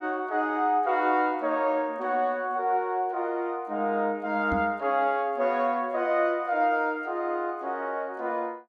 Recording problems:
microphone bump; at 4.5 s; peak -2 dB vs average level

